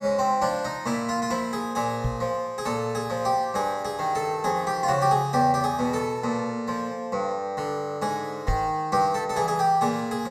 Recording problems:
microphone bump; at 2 s and at 8.5 s; peak +3 dB vs average level

